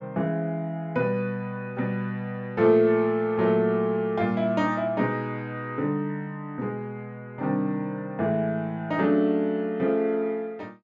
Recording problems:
none

